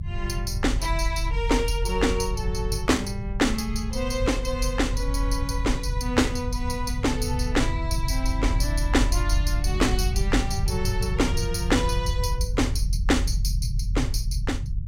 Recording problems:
rumble; below 84 Hz, strongest tone 42 Hz, SNR 1 dB

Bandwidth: 16 kHz